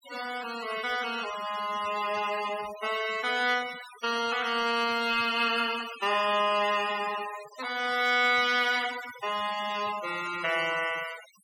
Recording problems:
noise reduction artefacts; signal-to-artefact ratio 13 dB

